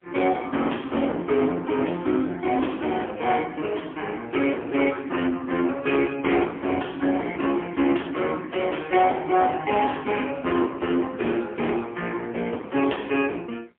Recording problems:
phone line; 240 Hz to 3.3 kHz, AMR-NB, then MP3
distorted audio; hard clipping, uneven, signal-to-distortion ratio 9 dB

